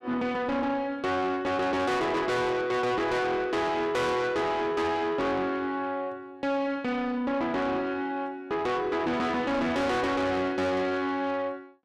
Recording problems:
distorted audio; soft clipping, signal-to-distortion ratio 7 dB

